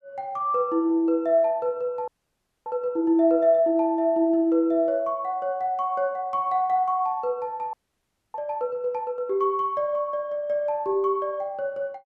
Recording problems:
frozen audio; at 2 s for 0.5 s and at 7.5 s for 0.5 s

